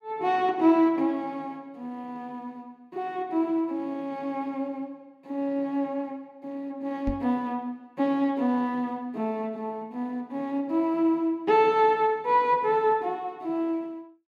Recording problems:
knock on the microphone; at 7 s; peak -2 dB vs average level

